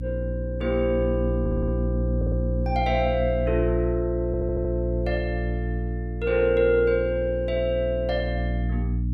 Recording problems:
hum; 60 Hz, harmonics up to 300 Hz, SNR 3 dB
audio stuttering; at 1.5 s, at 2 s and at 4.5 s

